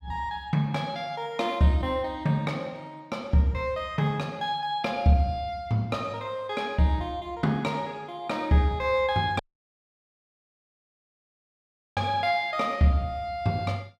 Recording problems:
dropout; at 9.5 s for 2.5 s

